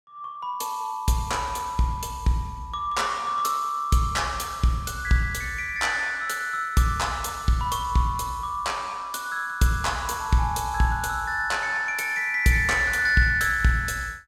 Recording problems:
none

